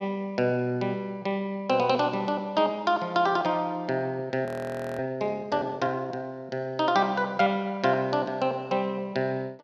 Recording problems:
frozen audio; at 4.5 s for 0.5 s

